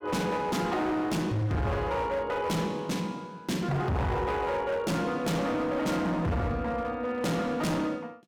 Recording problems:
distortion; hard clipping, signal-to-distortion ratio 6 dB

